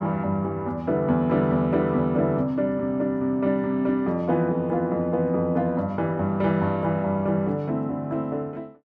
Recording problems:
none

